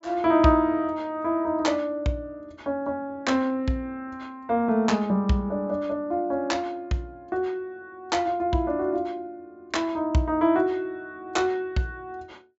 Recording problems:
treble missing; nothing above 8 kHz

